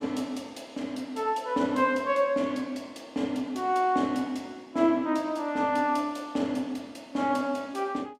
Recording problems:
none

